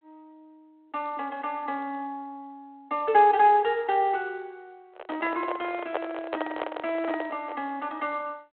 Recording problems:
phone line; 300 Hz to 3.5 kHz, G.726
microphone handling noise; from 5 to 7.5 s; peak +2 dB vs average level

